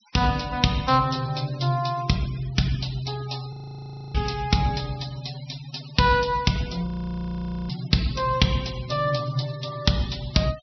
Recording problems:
treble missing; nothing above 5.9 kHz
noise reduction artefacts; signal-to-artefact ratio 17 dB
frozen audio; at 3.5 s for 0.5 s and at 7 s for 1 s

